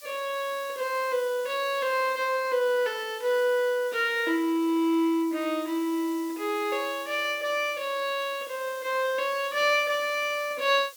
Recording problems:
background hiss; slope +4 dB per octave, SNR 19 dB

